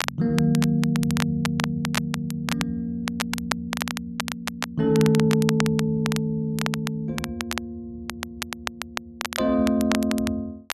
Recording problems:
crackling; vinyl, SNR 8 dB

